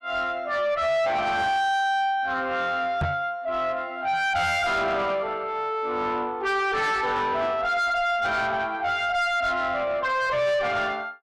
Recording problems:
distorted audio; soft clipping, signal-to-distortion ratio 7 dB
knock on the microphone; at 3 s; peak +2 dB vs average level

